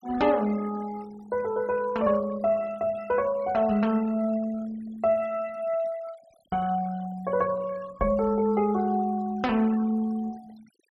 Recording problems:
noise reduction artefacts; signal-to-artefact ratio 22 dB

